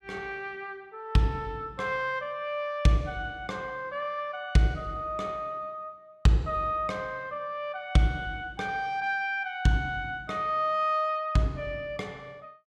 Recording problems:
none

